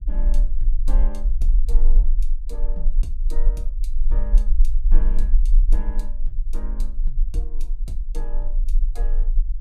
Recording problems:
low-frequency rumble; below 34 Hz, strongest tone 18 Hz, SNR -15 dB

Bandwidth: 15 kHz